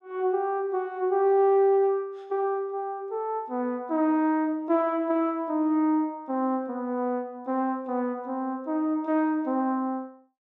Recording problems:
none

